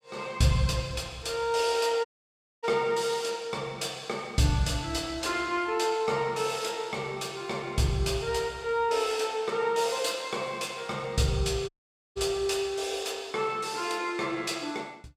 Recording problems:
dropout; at 2 s for 0.5 s and at 12 s

